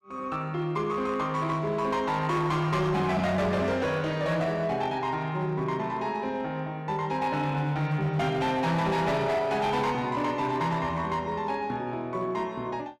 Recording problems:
distortion; hard clipping, signal-to-distortion ratio 11 dB

